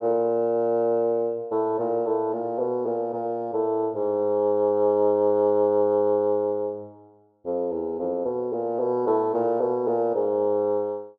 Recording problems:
none

